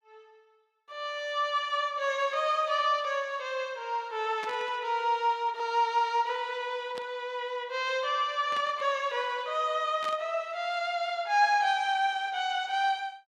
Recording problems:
static burst; 4 times, first at 4.5 s; peak -8 dB vs average level

